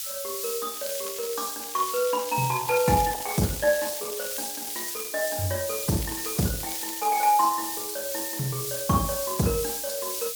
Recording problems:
lossy compression; Opus, log-spectral distance 5 dB
hiss; SNR 3 dB
crackle; at 0.5 s, from 1.5 to 5 s and from 6 to 7 s; loose cable, SNR 11 dB

